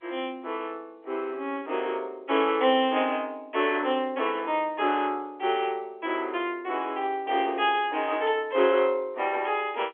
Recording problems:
phone line; 260 Hz to 3.5 kHz, G.711

